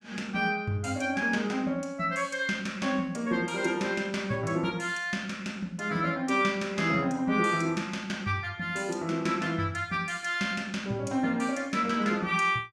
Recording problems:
none

